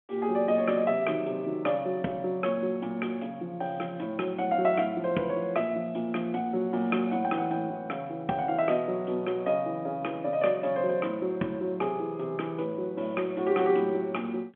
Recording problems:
telephone audio; 150 Hz to 3.4 kHz, G.711

